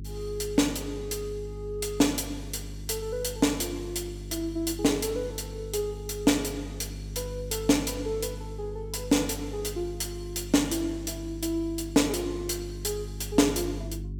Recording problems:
hum; 50 Hz, harmonics up to 400 Hz, SNR 11 dB

